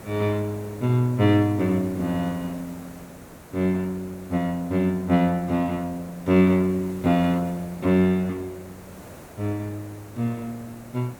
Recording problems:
hiss; slope -7 dB per octave, SNR 19 dB

